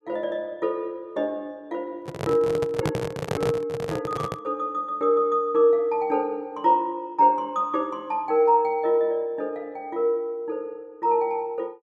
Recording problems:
microphone handling noise; from 2 to 4.5 s; peak +2 dB vs average level

